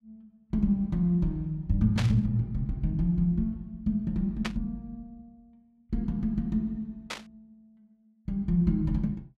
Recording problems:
static burst; at 2 s, at 4.5 s and at 7 s; peak 0 dB vs average level

